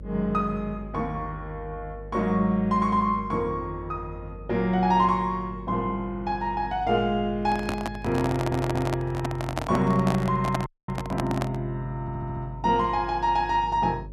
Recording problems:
hum; 50 Hz, harmonics up to 550 Hz, SNR 15 dB
handling noise; from 7.5 to 12 s; peak +2 dB vs average level
stutter; at 8.5 s and at 12 s
audio cutting out; at 11 s

